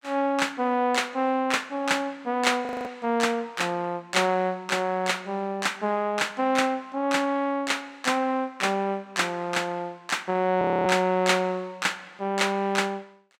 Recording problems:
frozen audio; at 2.5 s and at 11 s

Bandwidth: 16 kHz